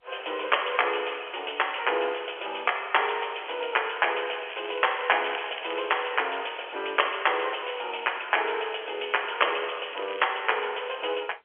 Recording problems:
telephone audio; 340 Hz to 3.3 kHz, G.711
crackling; from 4.5 to 6 s and at 10 s; loose cable, SNR 14 dB

